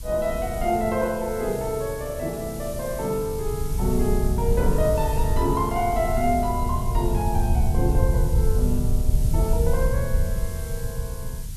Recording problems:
hiss; slope +2 dB per octave, SNR 14 dB
rumble; below 88 Hz, SNR 0 dB

